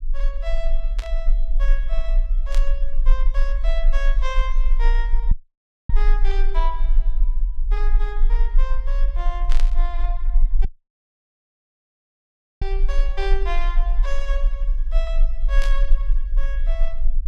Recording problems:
rumble; below 34 Hz, strongest tone 20 Hz, SNR -10 dB
static burst; 4 times, first at 1 s; peak +3 dB vs average level
audio cutting out; at 5.5 s for 0.5 s and at 11 s for 2 s

